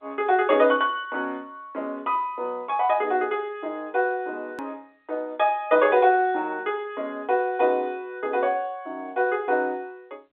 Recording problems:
telephone audio; 280 Hz to 3.8 kHz, G.711
click at an edit; at 4.5 s

